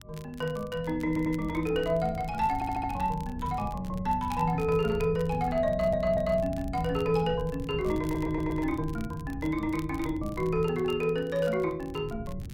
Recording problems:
wind on the microphone; below 140 Hz, SNR 11 dB
crackling; vinyl, SNR 24 dB
stutter; 4 times, first at 1 s

